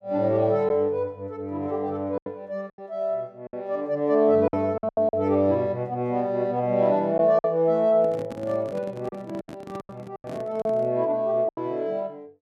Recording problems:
packet loss; 7% of the sound replaced, filled with silence
handling noise; from 8 to 11 s; peak -9 dB vs average level

